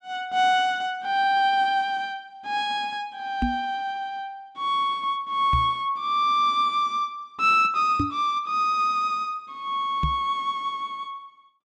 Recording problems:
microphone bump; 4 times, first at 3.5 s; peak +2 dB vs average level

